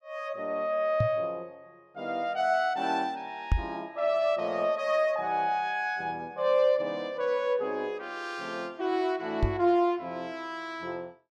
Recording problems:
knock on the microphone; at 1 s, at 3.5 s and at 9.5 s; peak +7 dB vs average level

